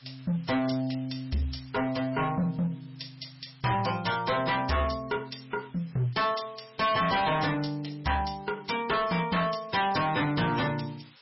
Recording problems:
lossy codec; MP3, log-spectral distance 11 dB, nothing above 5.5 kHz
distortion; hard clipping, signal-to-distortion ratio 7 dB
background hiss; slope +1 dB per octave, SNR 27 dB

